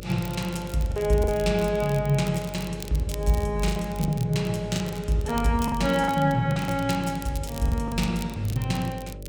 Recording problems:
hum; 50 Hz, harmonics up to 600 Hz, SNR 15 dB
crackle; vinyl, SNR 17 dB
lost packets; 7% of the sound replaced, filled with the last packet

